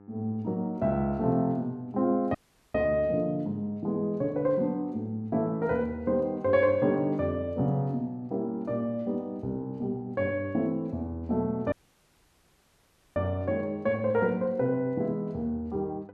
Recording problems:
electrical hum; 50 Hz, harmonics up to 1.3 kHz, SNR 25 dB
dropout; at 2.5 s and at 12 s for 1.5 s

